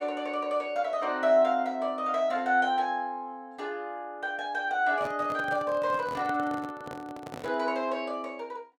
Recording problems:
handling noise; from 5 to 7.5 s; peak -8 dB vs average level

